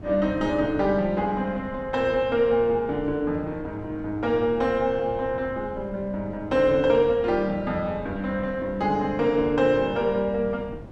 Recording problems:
wind noise; below 270 Hz, SNR 17 dB

